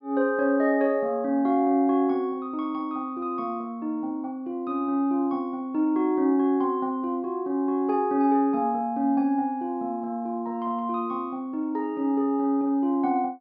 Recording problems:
treble cut off; nothing above 5.5 kHz

